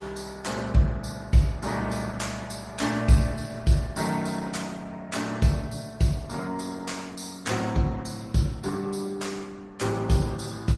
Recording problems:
lossy codec; MP3, then Opus, log-spectral distance 5 dB, nothing above 12 kHz

